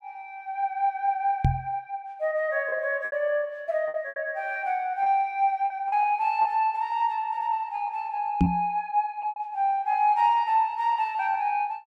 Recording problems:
lost packets; 5% of the sound replaced, filled with repeated pitch periods
knock on the microphone; at 1.5 s and at 8.5 s; peak +8 dB vs average level

